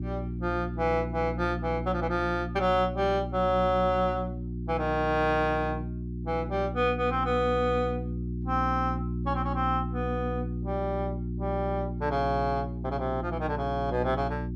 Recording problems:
mains hum; 60 Hz, harmonics up to 360 Hz, SNR 5 dB

